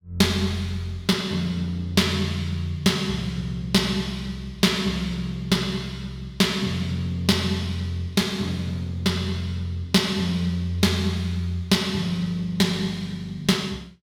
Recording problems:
none

